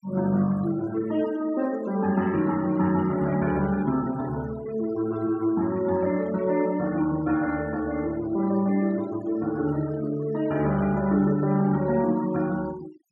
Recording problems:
denoising artefacts; signal-to-artefact ratio 19 dB

